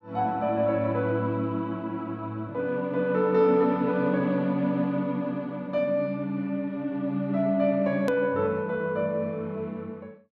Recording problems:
edit click; at 8 s

